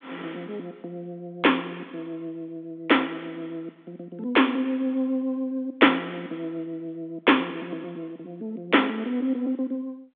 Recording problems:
telephone audio; 220 Hz to 3.6 kHz, G.726

